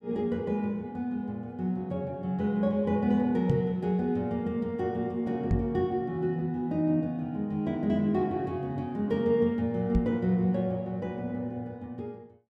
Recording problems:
microphone bump; at 3.5 s, at 5.5 s and at 10 s; peak +6 dB vs average level

